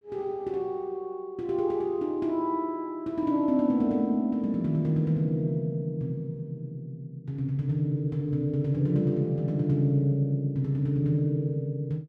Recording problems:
none

